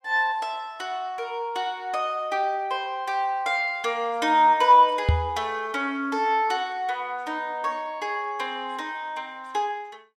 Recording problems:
microphone bump; at 5 s; peak +7 dB vs average level

